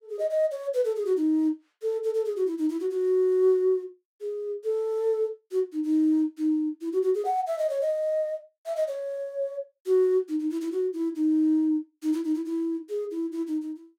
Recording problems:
none

